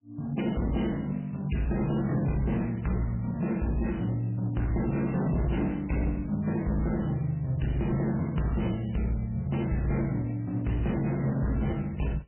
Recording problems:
lossy compression; MP3, log-spectral distance 5 dB, nothing above 3 kHz
distorted audio; hard clipping, uneven, signal-to-distortion ratio 11 dB

